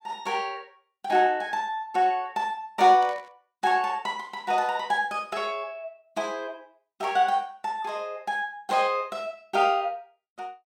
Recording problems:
static burst; at 3 s; peak -15 dB vs average level

